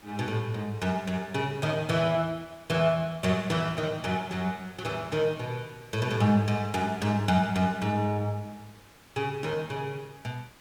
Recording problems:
hiss; slope -3 dB per octave, SNR 25 dB

